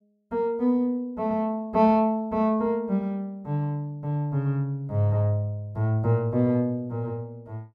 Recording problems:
none

